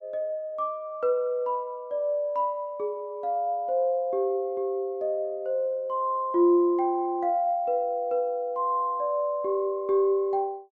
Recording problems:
none

